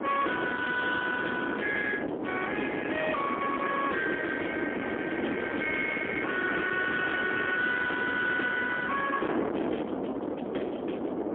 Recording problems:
telephone audio; 260 Hz to 3.4 kHz, AMR-NB, then MP3
distorted audio; soft clipping, signal-to-distortion ratio 8 dB
wind on the microphone; below 1.2 kHz, SNR 4 dB

